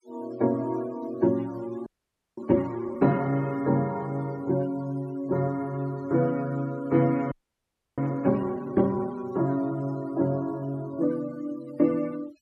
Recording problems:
denoising artefacts; signal-to-artefact ratio 23 dB
audio freezing; at 2 s for 0.5 s and at 7.5 s for 0.5 s

